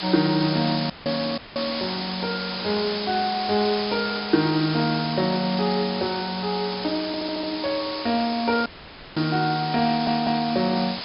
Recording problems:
low-pass filter; nothing above 5.5 kHz
hiss; SNR 6 dB
audio cutting out; at 1 s, at 1.5 s and at 8.5 s for 0.5 s; filled with static
stutter; at 7 s and at 10 s

